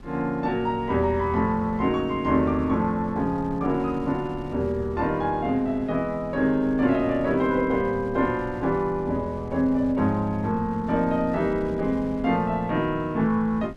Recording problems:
wind on the microphone; below 190 Hz, SNR 18 dB

